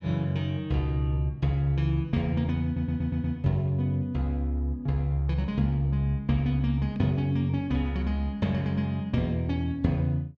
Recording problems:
stutter; at 2.5 s

